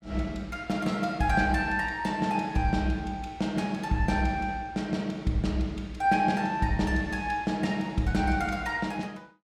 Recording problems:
none

